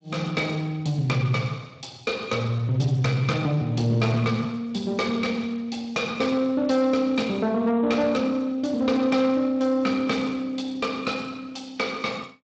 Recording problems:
lossy compression; Speex, log-spectral distance 4 dB, nothing above 7.3 kHz
distorted audio; soft clipping, signal-to-distortion ratio 11 dB

